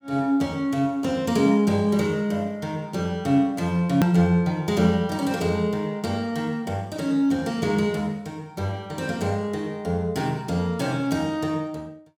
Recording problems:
hard cut with a click; at 4 s

